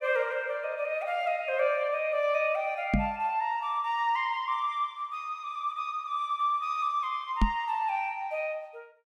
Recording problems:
microphone bump; at 3 s and at 7.5 s; peak +7 dB vs average level

